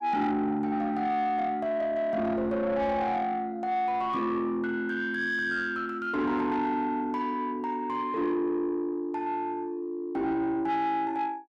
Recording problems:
distortion; soft clipping, signal-to-distortion ratio 11 dB

